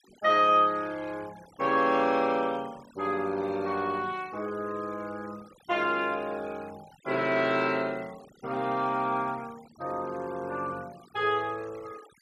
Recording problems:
denoising artefacts; signal-to-artefact ratio 23 dB

